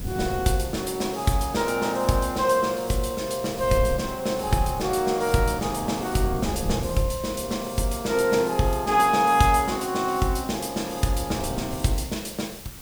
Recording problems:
hiss; slope -1 dB per octave, SNR 16 dB
wind noise; below 170 Hz, SNR 13 dB

